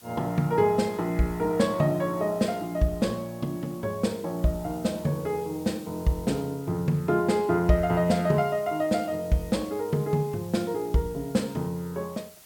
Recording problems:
background hiss; slope 0 dB per octave, SNR 22 dB

